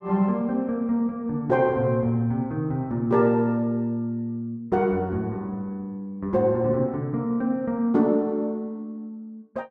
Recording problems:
none

